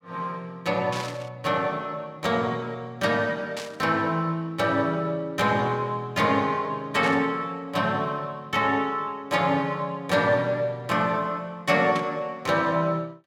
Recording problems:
static burst; 4 times, first at 1 s; peak -3 dB vs average level

